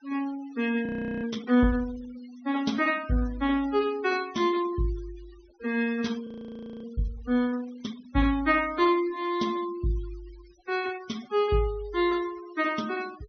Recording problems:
treble cut off; nothing above 6.2 kHz
denoising artefacts; signal-to-artefact ratio 20 dB
audio freezing; at 1 s and at 6.5 s for 0.5 s

